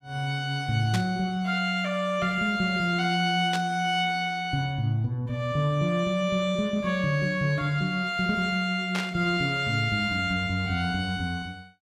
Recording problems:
burst of static; at 1 s, at 3.5 s and at 9 s; peak -2 dB vs average level

